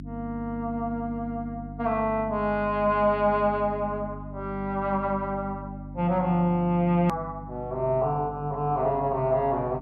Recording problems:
treble missing; nothing above 5.3 kHz
hum; 50 Hz, harmonics up to 300 Hz, SNR 13 dB
hard cut with a click; at 7 s

